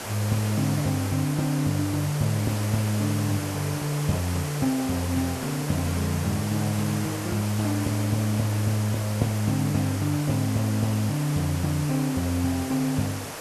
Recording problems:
hiss; SNR 8 dB

